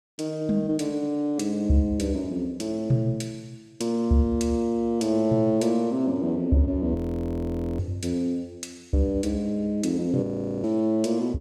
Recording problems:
frozen audio; at 7 s for 1 s and at 10 s

